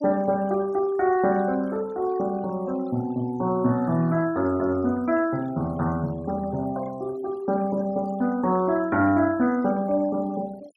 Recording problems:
denoising artefacts; signal-to-artefact ratio 23 dB

